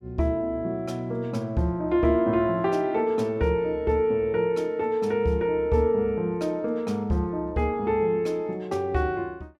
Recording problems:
none

